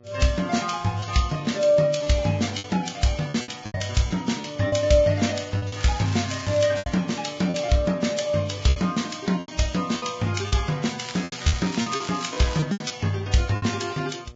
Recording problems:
lossy compression; Vorbis, log-spectral distance 6 dB, nothing above 7.3 kHz
electrical hum; 60 Hz, harmonics up to 1.9 kHz, SNR 27 dB
packet loss; 9% of the sound replaced, filled with repeated pitch periods
crackle; at 6 s and from 11 to 13 s; loose cable, SNR 13 dB

